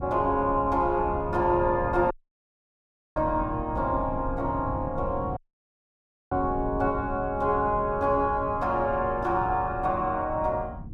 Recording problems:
wind noise; below 160 Hz, SNR 11 dB
audio cutting out; at 2 s for 1 s and at 5.5 s for 1 s

